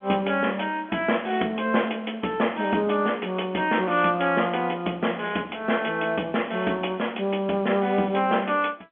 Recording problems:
phone line; 190 Hz to 3.4 kHz, G.711

